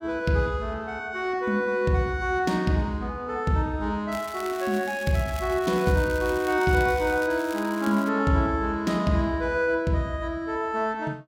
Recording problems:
crackling; from 4 to 8 s; loose cable, SNR 17 dB

